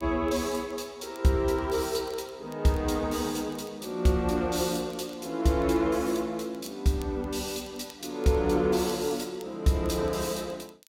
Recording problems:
crackling; vinyl, SNR 27 dB

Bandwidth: 16 kHz